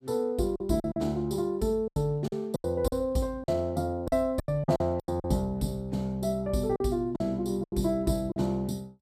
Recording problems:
lost packets; 10% of the sound replaced, filled with silence

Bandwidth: 14.5 kHz